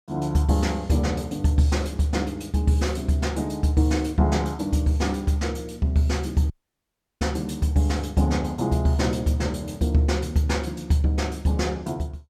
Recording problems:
dropout; at 6.5 s for 0.5 s

